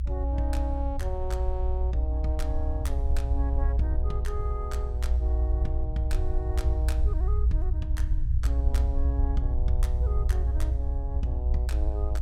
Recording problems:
low-frequency rumble; below 62 Hz, strongest tone 60 Hz, SNR -10 dB

